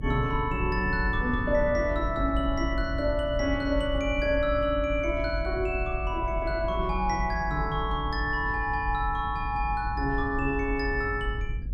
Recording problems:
low-frequency rumble; below 74 Hz, strongest tone 50 Hz, SNR 6 dB

